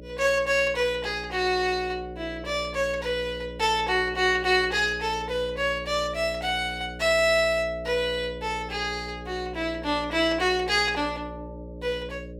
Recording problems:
electrical hum; 60 Hz, harmonics up to 600 Hz, SNR 15 dB

